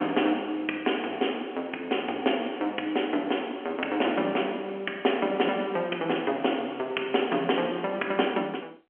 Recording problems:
phone line; 240 Hz to 3.2 kHz, G.711

